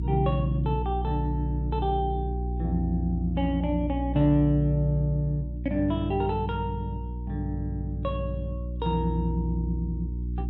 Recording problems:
hum; 60 Hz, harmonics up to 360 Hz, SNR 3 dB

